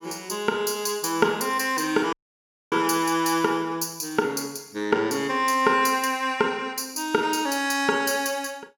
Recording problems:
audio cutting out; at 2 s for 0.5 s

